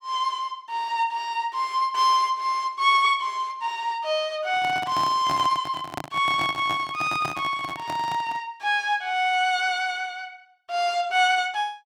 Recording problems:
microphone handling noise; from 4.5 to 8.5 s; peak -3 dB vs average level

